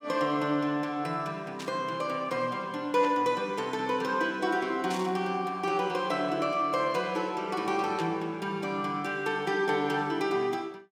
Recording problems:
static burst; 4 times, first at 1.5 s; peak -6 dB vs average level

